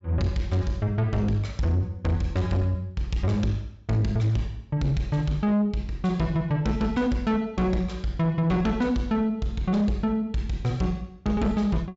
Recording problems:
treble missing; nothing above 8 kHz
distortion; soft clipping, signal-to-distortion ratio 10 dB

